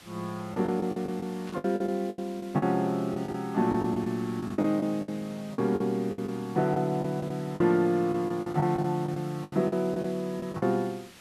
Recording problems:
background hiss; slope -1 dB per octave, SNR 22 dB
lost packets; 13% of the sound replaced, filled with the last packet
static burst; at 1.5 s; peak -15 dB vs average level

